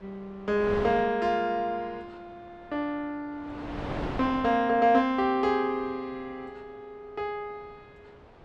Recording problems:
wind noise; below 950 Hz, SNR 11 dB

